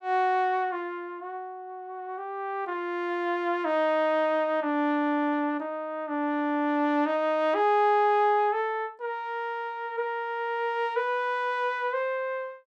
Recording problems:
none

